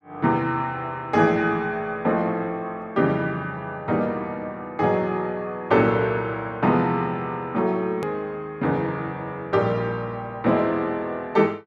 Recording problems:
click at an edit; at 8 s

